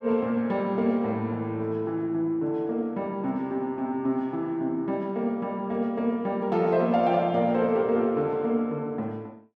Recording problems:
none

